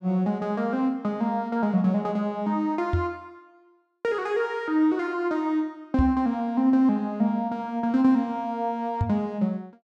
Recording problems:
microphone thump; at 3 s, at 6 s and at 9 s; peak +4 dB vs average level

